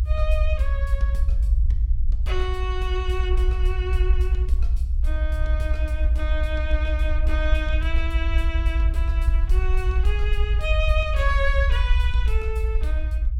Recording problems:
rumble; below 64 Hz, SNR -7 dB

